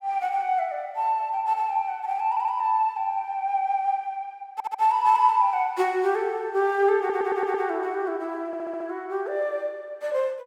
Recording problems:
stutter; 4 times, first at 2.5 s

